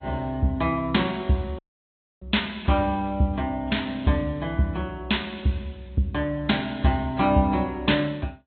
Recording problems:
low-pass filter; nothing above 4 kHz
lossy codec; AAC, log-spectral distance 2 dB
audio cutting out; at 1.5 s for 0.5 s

